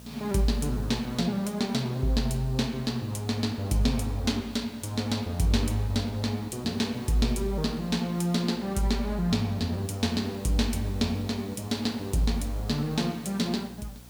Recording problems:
hum; 60 Hz, harmonics up to 720 Hz, SNR 23 dB
hiss; SNR 23 dB

